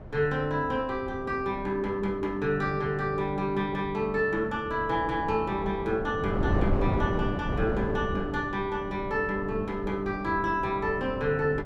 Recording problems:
wind noise; below 360 Hz, SNR 7 dB

